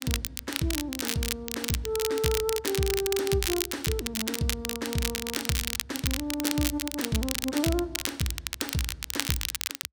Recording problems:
crackle; vinyl, SNR 0 dB

